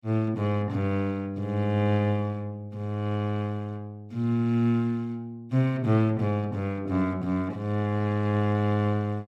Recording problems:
none

